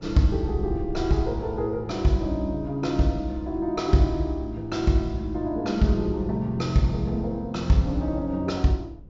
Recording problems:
low-pass filter; nothing above 8 kHz
wind noise; below 130 Hz, SNR 16 dB

